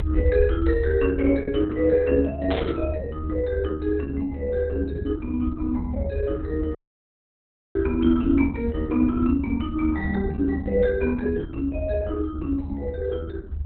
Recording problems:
lossy codec; Opus, log-spectral distance 2 dB
rumble; below 76 Hz, strongest tone 74 Hz, SNR 6 dB
burst of static; at 2.5 s; peak -5 dB vs average level
audio cutting out; at 7 s for 1 s

